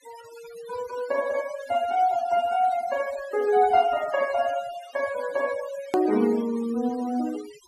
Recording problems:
denoising artefacts; signal-to-artefact ratio 17 dB
edit click; at 6 s

